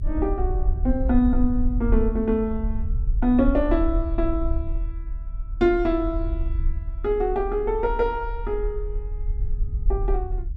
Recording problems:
low-frequency rumble; below 56 Hz, SNR 4 dB

